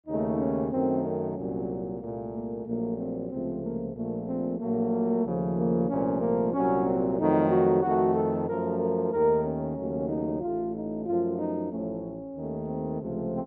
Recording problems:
none

